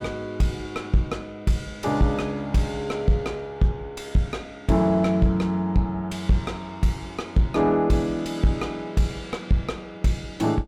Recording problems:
distorted audio; soft clipping, signal-to-distortion ratio 10 dB

